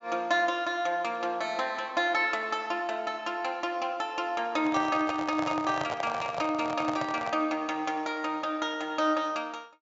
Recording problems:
treble missing; nothing above 8 kHz
microphone handling noise; from 4.5 to 7.5 s; peak +1 dB vs average level

